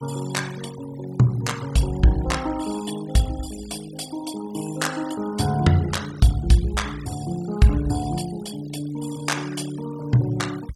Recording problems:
denoising artefacts; signal-to-artefact ratio 17 dB

